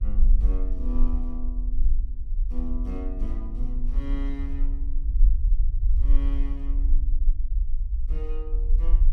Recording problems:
electrical hum; 50 Hz, harmonics up to 1.4 kHz, SNR 27 dB
low-frequency rumble; below 42 Hz, SNR -11 dB

